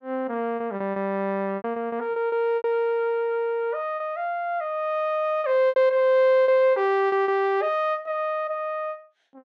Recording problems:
packet loss; 8% of the sound replaced, filled with repeated pitch periods

